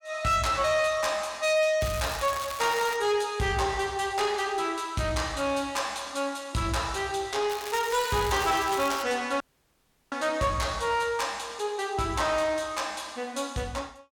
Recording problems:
distorted audio; soft clipping, signal-to-distortion ratio 12 dB
crackling; from 2 to 3 s and from 7.5 to 9 s; loose cable, SNR 11 dB
dropout; at 9.5 s for 0.5 s

